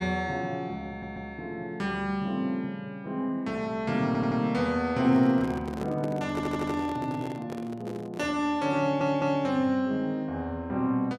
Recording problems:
audio stuttering; 4 times, first at 1 s
microphone handling noise; from 5 to 8.5 s; peak -2 dB vs average level

